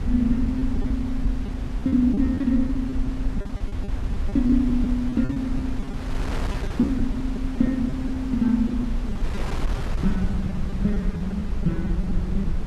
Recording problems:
hum; 60 Hz, harmonics up to 540 Hz, SNR 22 dB
low-frequency rumble; below 68 Hz, SNR 5 dB
wind on the microphone; below 1 kHz, SNR 12 dB
packet loss; 11% of the sound replaced, filled with repeated pitch periods

